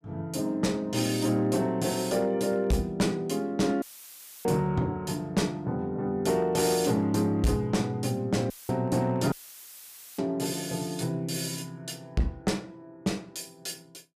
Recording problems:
distorted audio; hard clipping, signal-to-distortion ratio 11 dB
dropout; at 4 s for 0.5 s, at 8.5 s and at 9.5 s for 1 s; filled with static

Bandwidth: 15 kHz